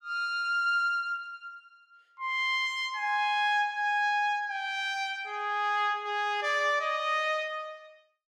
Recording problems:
none

